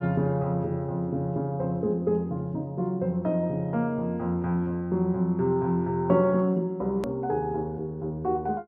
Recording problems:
edit click; at 7 s

